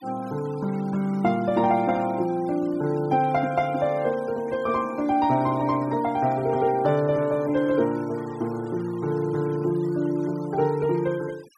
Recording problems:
noise reduction artefacts; signal-to-artefact ratio 23 dB

